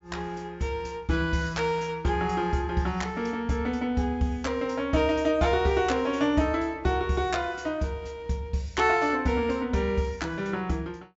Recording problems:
low-pass filter; nothing above 8 kHz

